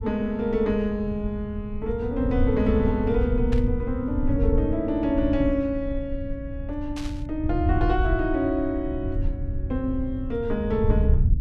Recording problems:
low-frequency rumble; below 90 Hz, SNR 3 dB
burst of static; at 3.5 s and at 7 s; peak -8 dB vs average level

